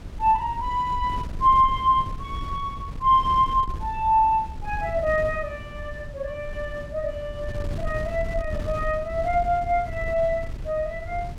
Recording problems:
wind on the microphone; below 110 Hz, SNR 12 dB

